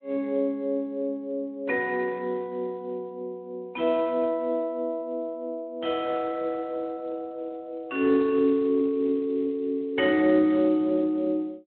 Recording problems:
phone line; 220 Hz to 3.4 kHz, Speex

